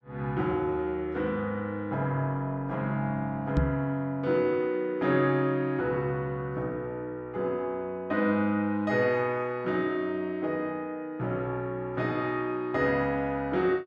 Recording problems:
microphone bump; at 3.5 s; peak +7 dB vs average level

